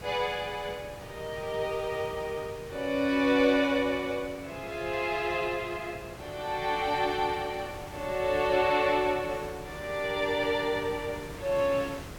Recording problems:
hiss; slope -5 dB per octave, SNR 15 dB

